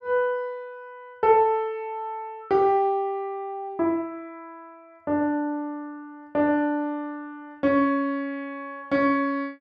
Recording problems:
none

